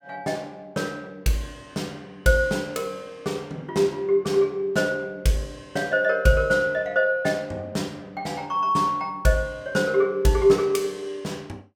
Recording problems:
none

